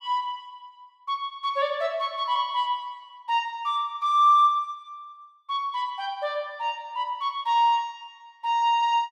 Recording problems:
none

